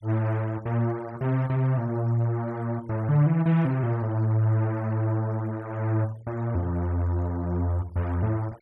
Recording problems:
noise reduction artefacts; signal-to-artefact ratio 27 dB

